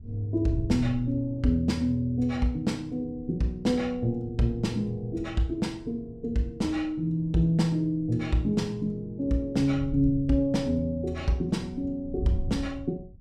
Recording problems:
wind on the microphone; below 110 Hz, SNR 14 dB

